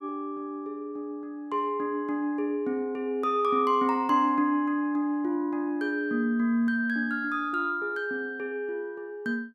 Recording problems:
none

